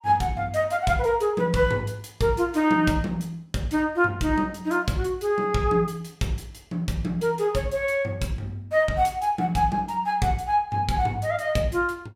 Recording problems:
none

